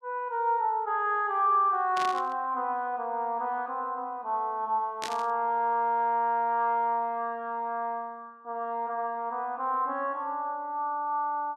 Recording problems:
static burst; at 2 s and at 5 s; peak -3 dB vs average level

